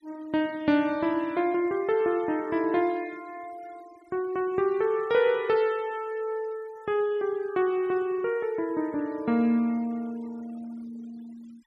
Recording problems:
denoising artefacts; signal-to-artefact ratio 26 dB

